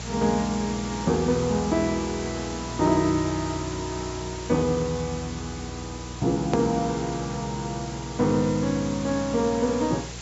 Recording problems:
low-pass filter; nothing above 8 kHz
hum; 60 Hz, harmonics up to 660 Hz, SNR 13 dB
hiss; slope 0 dB per octave, SNR 12 dB
edit click; at 6.5 s

